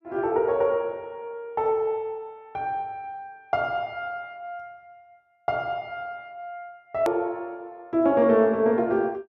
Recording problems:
click at an edit; at 7 s

